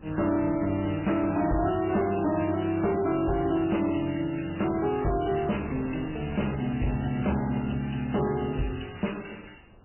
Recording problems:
lossy compression; MP3, log-spectral distance 8 dB, nothing above 3 kHz
distortion; hard clipping, signal-to-distortion ratio 11 dB
wind on the microphone; below 560 Hz, SNR 20 dB

